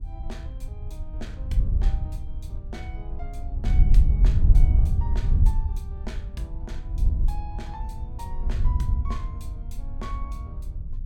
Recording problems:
wind noise; below 68 Hz, SNR -14 dB

